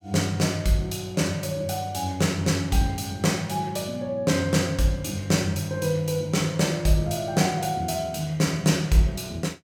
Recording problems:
none

